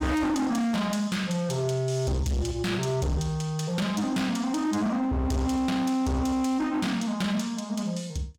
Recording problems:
distortion; hard clipping, signal-to-distortion ratio 7 dB

